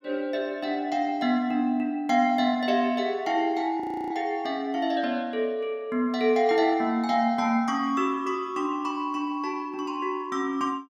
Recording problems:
frozen audio; at 4 s

